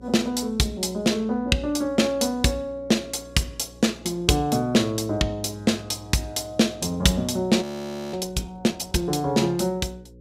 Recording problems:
electrical hum; 60 Hz, harmonics up to 540 Hz, SNR 23 dB
frozen audio; at 7.5 s for 0.5 s

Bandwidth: 15.5 kHz